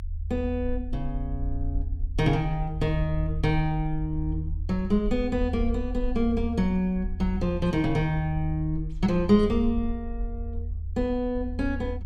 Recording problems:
rumble; below 78 Hz, SNR 6 dB

